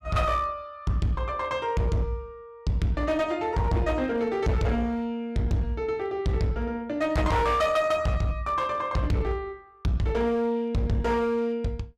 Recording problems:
distorted audio; hard clipping, uneven, signal-to-distortion ratio 8 dB

